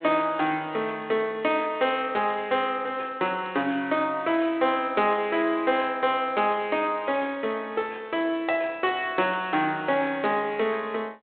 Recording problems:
phone line; 220 Hz to 3.9 kHz, G.726

